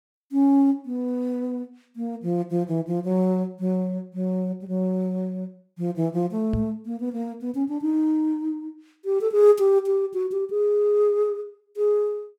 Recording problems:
knock on the microphone; at 6.5 s; peak +1 dB vs average level

